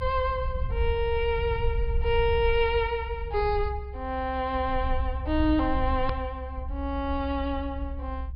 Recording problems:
low-pass filter; nothing above 5.5 kHz
low-frequency rumble; below 68 Hz, SNR 5 dB
hard cut with a click; at 6 s

